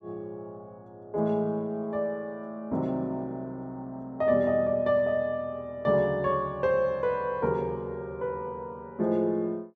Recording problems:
none

